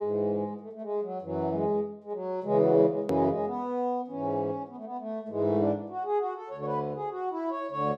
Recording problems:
edit click; at 3 s

